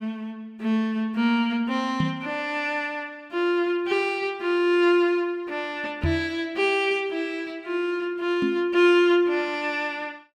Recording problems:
microphone bump; at 2 s, at 6 s and at 8.5 s; peak +1 dB vs average level

